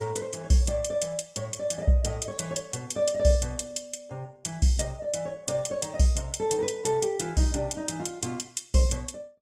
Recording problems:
codec artefacts; Opus, log-spectral distance 4 dB, nothing above 18.9 kHz

